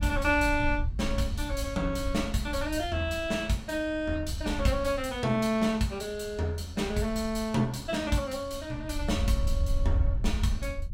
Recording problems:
wind noise; below 72 Hz, SNR 5 dB

